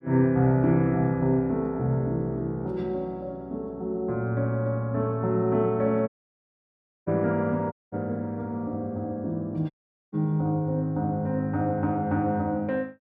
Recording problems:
audio cutting out; at 6 s for 1 s, at 7.5 s and at 9.5 s

